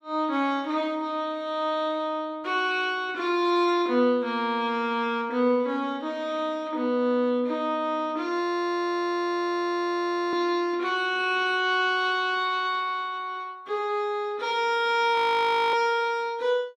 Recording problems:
audio freezing; at 8.5 s for 2 s and at 15 s for 0.5 s

